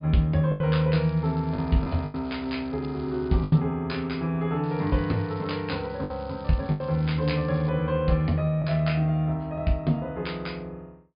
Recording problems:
treble cut off; nothing above 5 kHz
lost packets; 4% of the sound replaced, filled with the last packet
crackling; from 1 to 3.5 s and from 4.5 to 7.5 s; loose cable, SNR 27 dB

